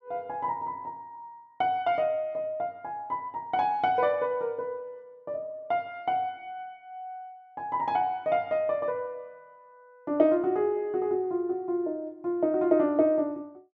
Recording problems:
none

